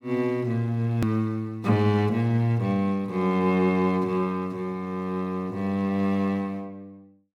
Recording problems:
hard cut with a click; at 1 s

